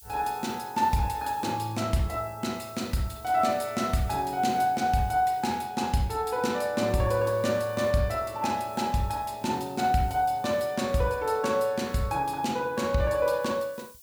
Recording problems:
hiss; SNR 23 dB

